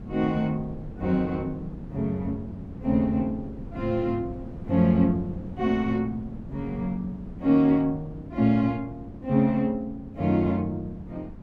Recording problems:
wind on the microphone; below 240 Hz, SNR 14 dB

